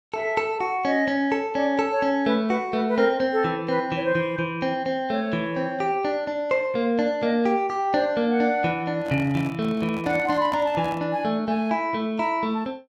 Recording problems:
microphone handling noise; from 9 to 11 s; peak -7 dB vs average level

